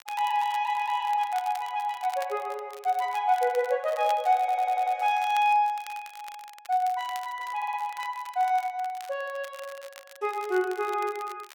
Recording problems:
crackling; vinyl, SNR 20 dB
audio stuttering; at 4.5 s and at 7.5 s

